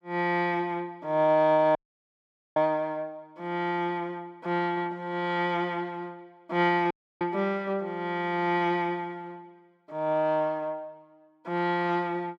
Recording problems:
dropout; at 2 s for 1 s and at 7 s

